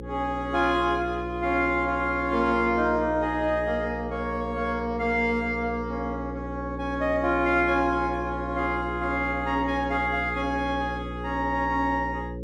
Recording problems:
electrical hum; 60 Hz, harmonics up to 540 Hz, SNR 10 dB

